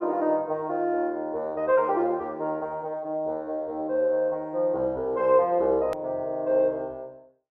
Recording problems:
hard cut with a click; at 6 s

